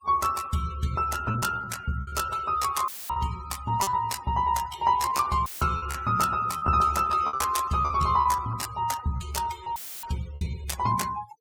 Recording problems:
denoising artefacts; signal-to-artefact ratio 18 dB
packet loss; 10% of the sound replaced, filled with repeated pitch periods
dropout; at 3 s, at 5.5 s and at 10 s; filled with static

